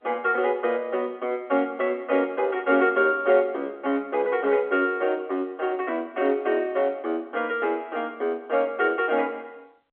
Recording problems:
telephone audio; 240 Hz to 3.3 kHz, G.711

